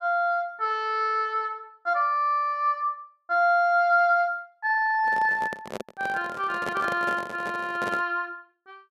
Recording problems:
handling noise; from 5 to 8 s; peak -5 dB vs average level

